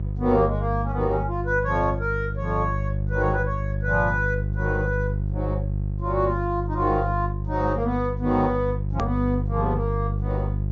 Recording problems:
treble cut off; nothing above 7 kHz
hum; 50 Hz, harmonics up to 400 Hz, SNR 2 dB
hard cut with a click; at 9 s

